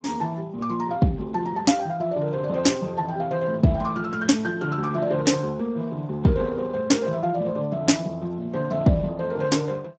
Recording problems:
lossy compression; Speex, log-spectral distance 3 dB, nothing above 7.6 kHz

